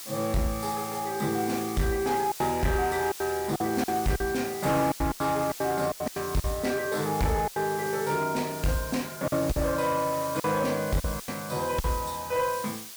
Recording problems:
distorted audio; soft clipping, signal-to-distortion ratio 11 dB
background hiss; slope +2 dB per octave, SNR 11 dB
packet loss; 8% of the sound replaced, filled with silence

